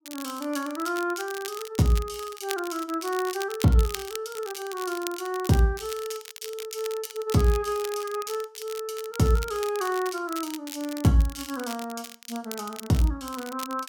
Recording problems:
crackle; vinyl, SNR 12 dB

